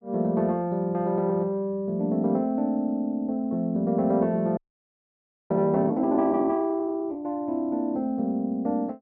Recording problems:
audio freezing; at 4.5 s for 1 s

